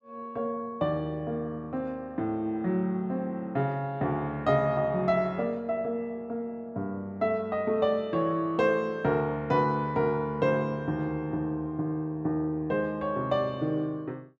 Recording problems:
none

